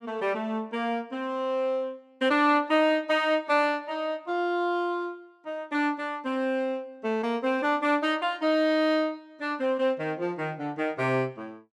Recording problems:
none

